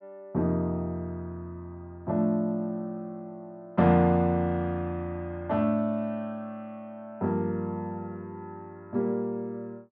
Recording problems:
none

